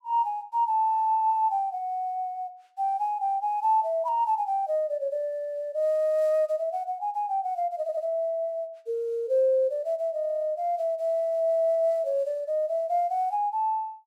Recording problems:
audio stuttering; at 8 s and at 10 s

